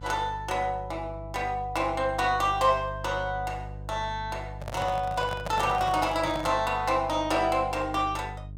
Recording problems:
hum; 50 Hz, harmonics up to 450 Hz, SNR 13 dB
microphone handling noise; from 4.5 to 6.5 s; peak -3 dB vs average level

